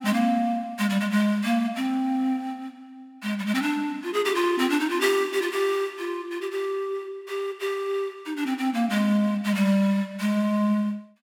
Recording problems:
none

